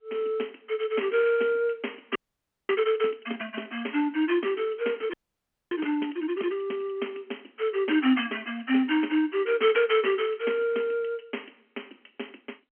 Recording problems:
telephone audio; 240 Hz to 3.2 kHz, G.711
audio freezing; at 2 s for 0.5 s and at 5 s for 0.5 s

